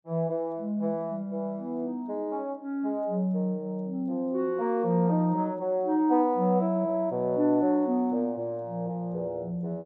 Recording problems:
none

